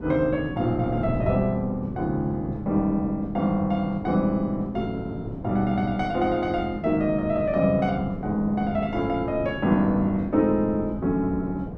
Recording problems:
wind noise; below 320 Hz, SNR 10 dB

